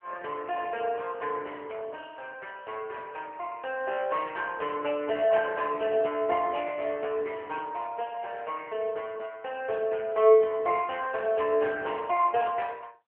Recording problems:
phone line; 320 Hz to 3.3 kHz, AMR-NB

